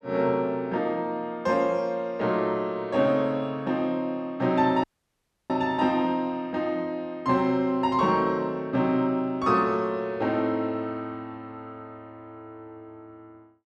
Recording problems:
audio cutting out; at 5 s for 0.5 s

